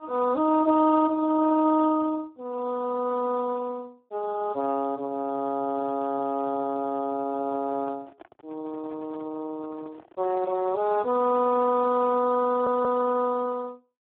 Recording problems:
phone line; 240 Hz to 2 kHz, Speex
microphone handling noise; from 7.5 to 11 s; peak -15 dB vs average level
audio stuttering; at 12 s

